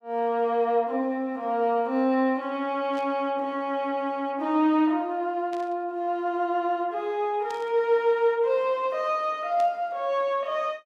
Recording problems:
burst of static; 4 times, first at 3 s; peak -14 dB vs average level

